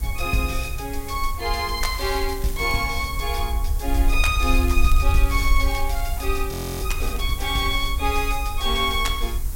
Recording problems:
background hiss; SNR 13 dB
rumble; below 58 Hz, SNR 2 dB
crackling; from 2 to 3 s, from 4.5 to 6 s and at 7 s; loose cable, SNR 18 dB
audio freezing; at 6.5 s

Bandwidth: 16 kHz